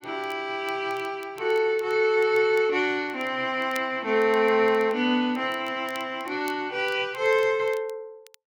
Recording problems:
crackling; vinyl, SNR 26 dB

